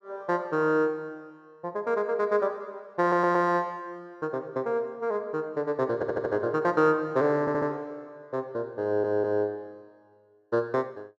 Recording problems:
stutter; 4 times, first at 3 s

